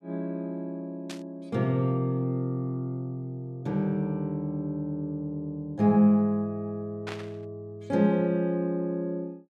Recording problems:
static burst; at 1 s and at 7 s; peak -5 dB vs average level

